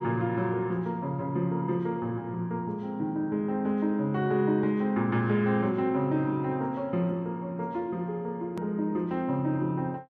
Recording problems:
hard cut with a click; at 8.5 s

